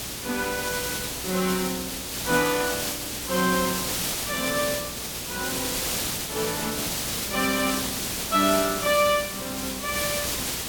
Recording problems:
hum; 60 Hz, harmonics up to 600 Hz, SNR 20 dB
hiss; slope -1 dB per octave, SNR 1 dB

